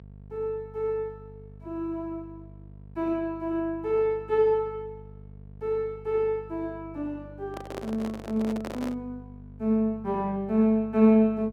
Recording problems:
mains hum; 50 Hz, harmonics up to 650 Hz, SNR 19 dB
handling noise; from 7.5 to 9 s; peak -6 dB vs average level

